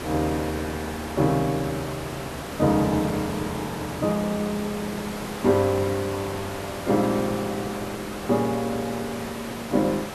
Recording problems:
hiss; slope -5 dB per octave, SNR 8 dB

